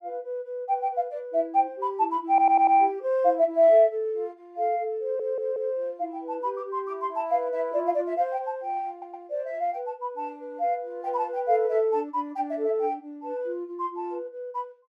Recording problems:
stutter; at 2.5 s, at 5 s and at 9 s

